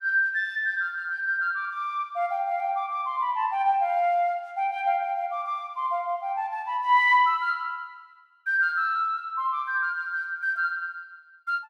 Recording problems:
none

